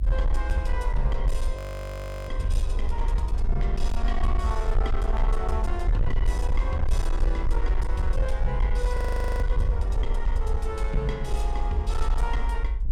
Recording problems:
distortion; hard clipping, signal-to-distortion ratio 12 dB
low-frequency rumble; below 52 Hz, SNR -4 dB
audio freezing; at 1.5 s for 0.5 s and at 9 s

